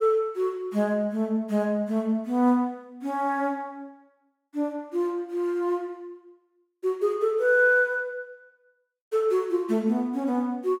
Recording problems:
none

